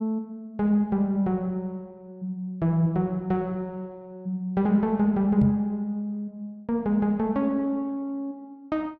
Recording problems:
knock on the microphone; at 5.5 s; peak +4 dB vs average level

